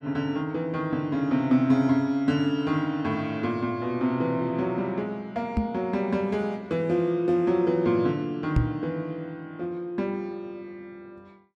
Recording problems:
microphone bump; at 5.5 s and at 8.5 s; peak +6 dB vs average level

